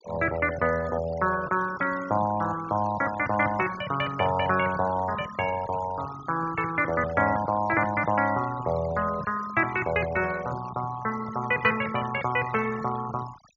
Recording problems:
treble missing; nothing above 7 kHz
denoising artefacts; signal-to-artefact ratio 16 dB

